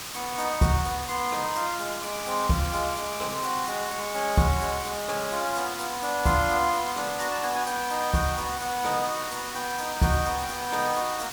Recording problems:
background hiss; slope 0 dB per octave, SNR 7 dB

